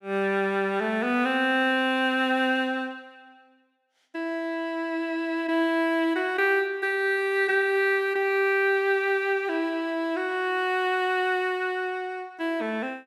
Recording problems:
none

